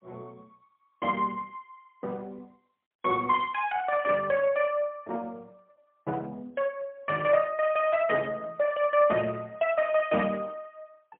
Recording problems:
phone line; 280 Hz to 3.1 kHz, AMR-NB, then MP3

